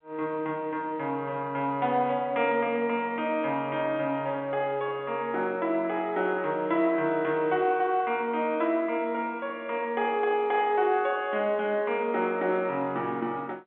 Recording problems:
telephone audio; 240 Hz to 3.5 kHz, G.711

